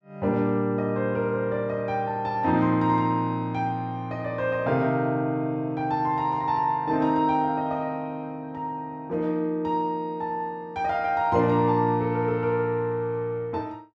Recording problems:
none

